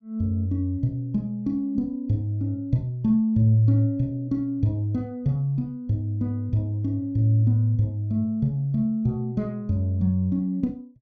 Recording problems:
none

